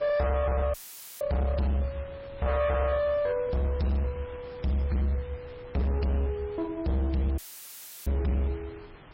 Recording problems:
lossy codec; MP3, log-spectral distance 2 dB
distorted audio; hard clipping, uneven, signal-to-distortion ratio 7 dB
wind noise; below 1.5 kHz, SNR 20 dB
dropout; at 0.5 s and at 7.5 s for 0.5 s; filled with static

